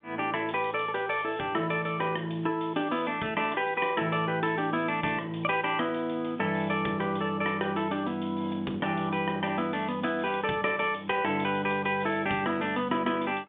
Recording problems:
telephone audio; 130 Hz to 3.6 kHz, G.711

